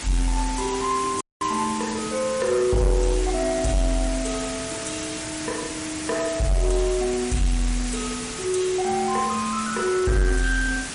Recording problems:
lossy codec; MP3, log-spectral distance 11 dB, nothing above 10.4 kHz
distorted audio; soft clipping, signal-to-distortion ratio 12 dB
hiss; slope -1 dB per octave, SNR 7 dB
dropout; at 1 s

